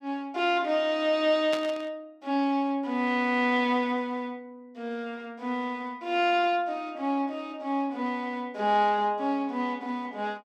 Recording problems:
burst of static; at 1.5 s; peak -3 dB vs average level

